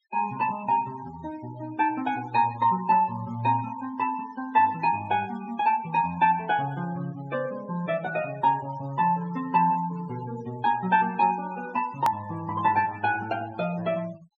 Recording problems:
treble missing; nothing above 8 kHz
noise reduction artefacts; signal-to-artefact ratio 20 dB
click at an edit; at 12 s

